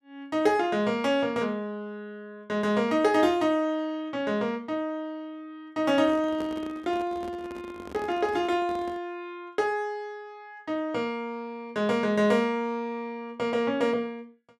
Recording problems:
microphone handling noise; from 6 to 9 s; peak -7 dB vs average level

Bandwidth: 14 kHz